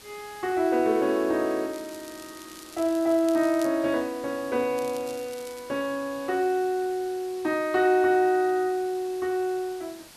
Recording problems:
hiss; slope -1 dB per octave, SNR 21 dB
crackling; from 1.5 to 3.5 s and at 5 s; loose cable, SNR 21 dB

